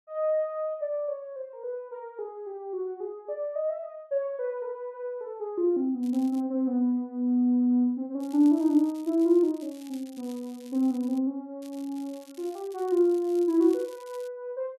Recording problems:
crackle; at 6 s, from 8 to 11 s and from 12 s on; loose cable, SNR 26 dB

